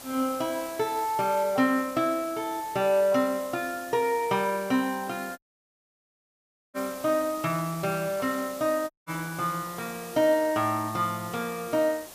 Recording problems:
background hiss; SNR 15 dB
audio cutting out; at 5.5 s for 1.5 s and at 9 s

